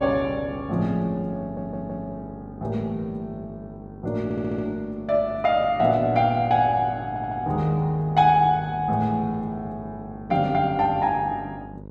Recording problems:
mains hum; 50 Hz, harmonics up to 1.1 kHz, SNR 18 dB
audio stuttering; at 1.5 s, at 4 s and at 7 s

